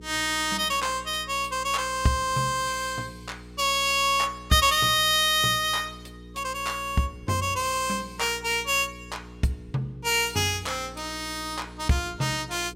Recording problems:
mains hum; 60 Hz, harmonics up to 480 Hz, SNR 20 dB

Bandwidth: 16.5 kHz